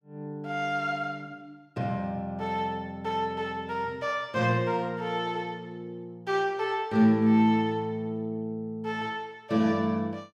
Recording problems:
none

